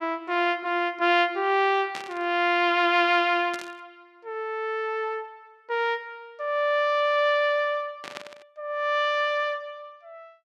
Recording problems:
static burst; at 2 s, at 3.5 s and at 8 s; peak -7 dB vs average level

